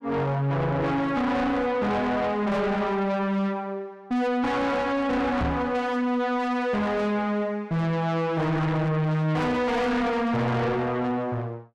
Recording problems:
distortion; soft clipping, signal-to-distortion ratio 5 dB
knock on the microphone; at 5.5 s; peak +4 dB vs average level

